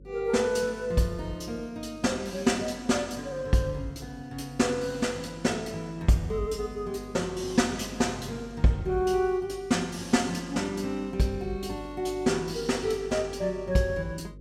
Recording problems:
hum; 50 Hz, harmonics up to 550 Hz, SNR 20 dB

